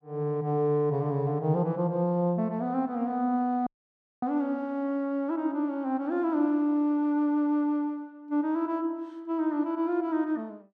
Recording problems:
dropout; at 3.5 s for 0.5 s

